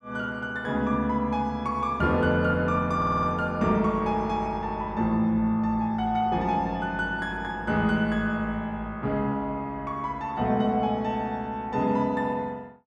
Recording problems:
audio stuttering; at 3 s

